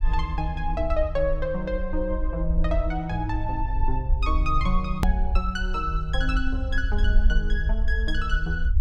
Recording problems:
low-frequency rumble; below 56 Hz, SNR -1 dB
hard cut with a click; at 5 s

